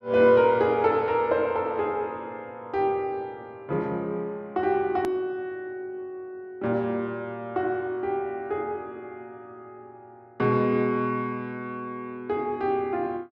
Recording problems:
click at an edit; at 5 s

